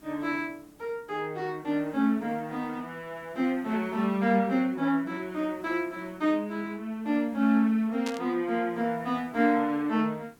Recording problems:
background hiss; SNR 28 dB
burst of static; at 8 s; peak -5 dB vs average level

